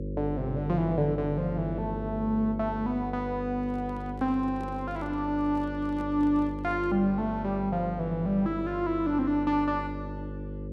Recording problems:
hum; 50 Hz, harmonics up to 550 Hz, SNR 8 dB
handling noise; from 3.5 to 7 s; peak -13 dB vs average level

